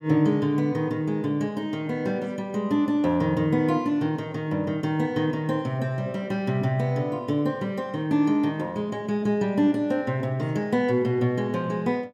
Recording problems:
none

